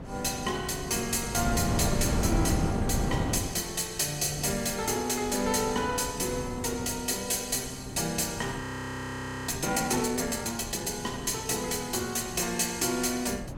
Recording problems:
wind noise; below 330 Hz, SNR 6 dB
frozen audio; at 8.5 s for 1 s

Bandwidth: 16.5 kHz